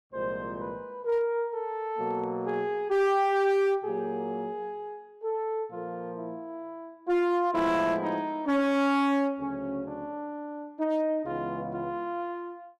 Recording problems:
distorted audio; hard clipping, uneven, signal-to-distortion ratio 11 dB

